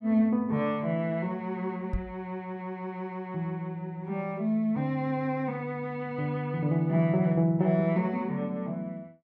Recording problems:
knock on the microphone; at 2 s; peak 0 dB vs average level

